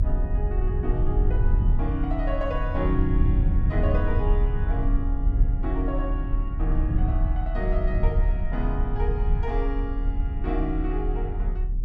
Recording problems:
low-frequency rumble; below 70 Hz, strongest tone 36 Hz, SNR -5 dB

